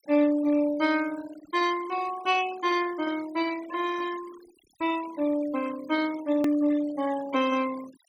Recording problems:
denoising artefacts; signal-to-artefact ratio 18 dB
click at an edit; at 6.5 s

